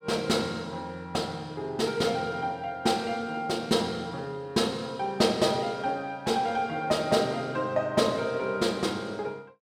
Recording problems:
none

